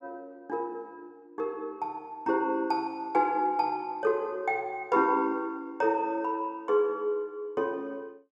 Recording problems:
none

